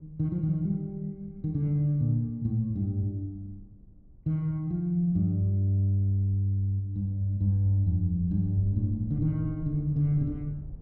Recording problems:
low-frequency rumble; below 100 Hz, SNR 21 dB

